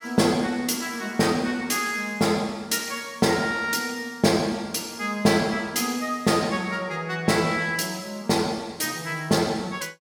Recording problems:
none

